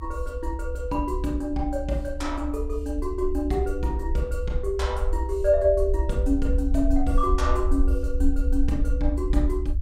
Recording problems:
rumble; below 64 Hz, SNR 2 dB

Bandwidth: 16 kHz